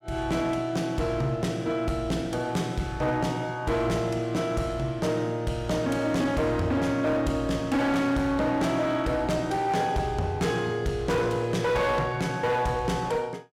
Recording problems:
distortion; hard clipping, signal-to-distortion ratio 10 dB

